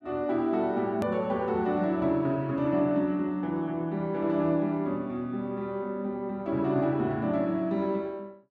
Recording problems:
edit click; at 1 s

